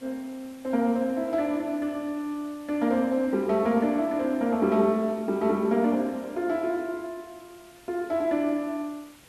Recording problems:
background hiss; slope -2 dB per octave, SNR 26 dB

